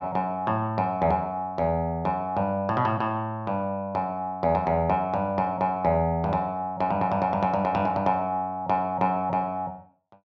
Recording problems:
none

